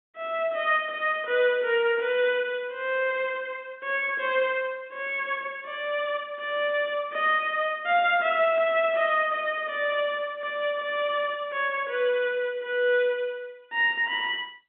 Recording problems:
telephone audio; 220 Hz to 3.6 kHz, G.711

